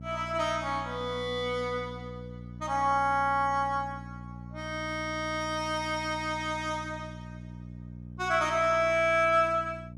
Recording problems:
hum; 60 Hz, harmonics up to 540 Hz, SNR 14 dB

